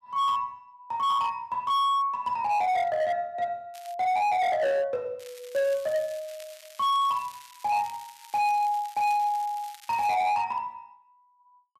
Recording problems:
distorted audio; hard clipping, signal-to-distortion ratio 11 dB
crackle; at 3.5 s and from 5 to 10 s; loose cable, SNR 22 dB

